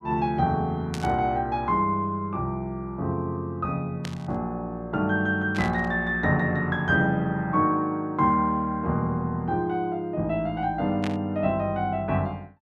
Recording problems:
static burst; 4 times, first at 1 s; peak -6 dB vs average level

